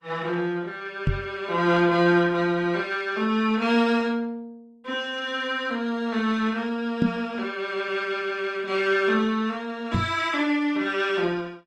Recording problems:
lossy compression; Opus, log-spectral distance 2 dB
microphone thump; at 1 s, at 7 s and at 10 s; peak +6 dB vs average level

